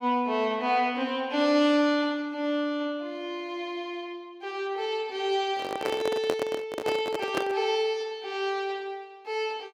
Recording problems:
handling noise; from 5.5 to 7.5 s; peak +3 dB vs average level

